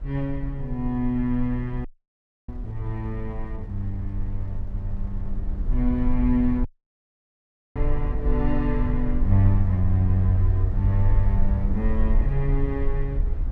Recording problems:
low-frequency rumble; below 54 Hz, strongest tone 22 Hz, SNR 3 dB
wind noise; below 140 Hz, SNR 20 dB
audio cutting out; at 2 s for 0.5 s and at 6.5 s for 1 s

